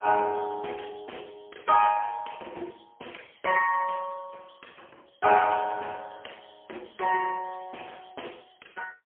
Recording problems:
phone line; 320 Hz to 3.1 kHz, AMR-NB, then MP3

